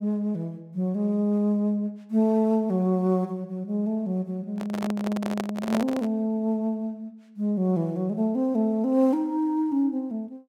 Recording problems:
handling noise; from 4.5 to 6 s; peak 0 dB vs average level

